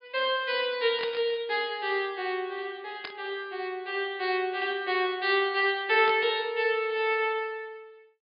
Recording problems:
treble cut off; nothing above 5.1 kHz
static burst; at 1 s, at 3 s and at 6 s; peak -4 dB vs average level

